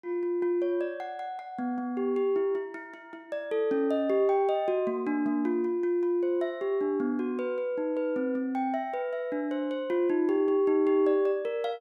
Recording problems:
none

